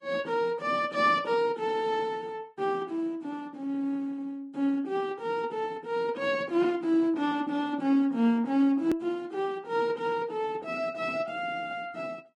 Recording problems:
lossy codec; Vorbis, log-spectral distance 2 dB
click at an edit; at 9 s

